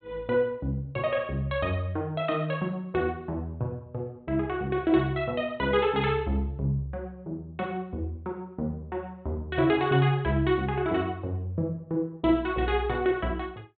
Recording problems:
treble cut off; nothing above 4 kHz

